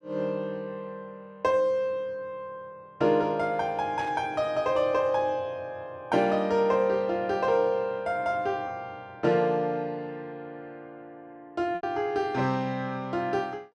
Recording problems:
lost packets; 0.7% of the sound replaced, filled with repeated pitch periods
burst of static; at 4 s; peak -13 dB vs average level

